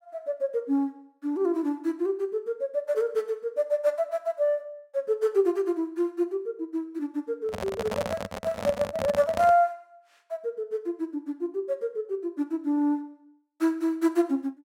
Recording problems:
handling noise; from 7.5 to 9.5 s; peak 0 dB vs average level

